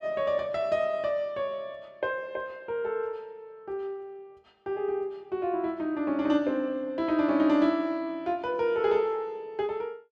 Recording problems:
none

